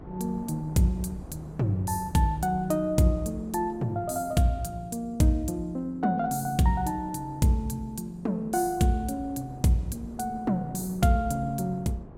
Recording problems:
electrical hum; 50 Hz, harmonics up to 400 Hz, SNR 23 dB
wind noise; below 440 Hz, SNR 20 dB

